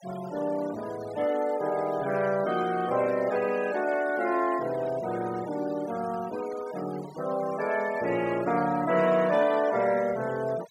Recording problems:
denoising artefacts; signal-to-artefact ratio 17 dB

